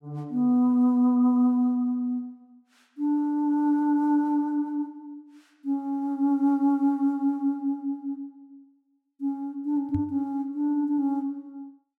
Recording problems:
knock on the microphone; at 10 s; peak -3 dB vs average level

